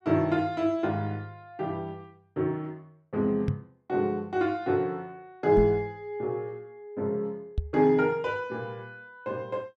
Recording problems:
microphone thump; at 3.5 s, at 5.5 s and at 7.5 s; peak +3 dB vs average level

